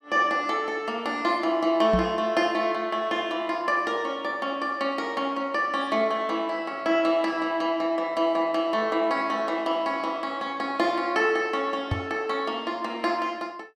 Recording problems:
microphone bump; at 2 s and at 12 s; peak +3 dB vs average level

